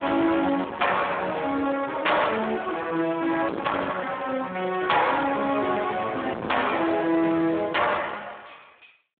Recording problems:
phone line; 240 Hz to 3.5 kHz, Speex
distorted audio; soft clipping, signal-to-distortion ratio 8 dB

